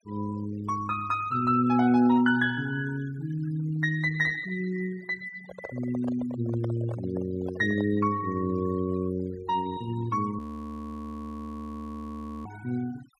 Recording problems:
denoising artefacts; signal-to-artefact ratio 21 dB
microphone handling noise; from 5.5 to 8 s; peak -6 dB vs average level
audio freezing; at 10 s for 2 s

